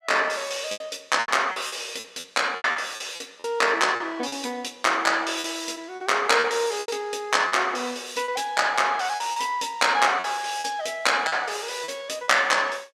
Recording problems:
lost packets; 10% of the sound replaced, filled with repeated pitch periods

